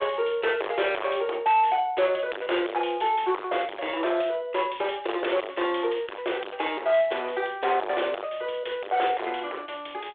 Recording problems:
telephone audio; 320 Hz to 3.6 kHz, G.726
distorted audio; hard clipping, signal-to-distortion ratio 5 dB

